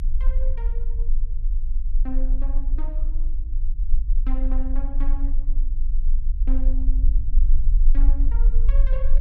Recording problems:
low-frequency rumble; below 36 Hz, strongest tone 22 Hz, SNR -14 dB

